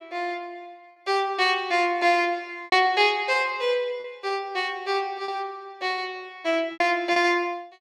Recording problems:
packet loss; 4% of the sound replaced, filled with repeated pitch periods

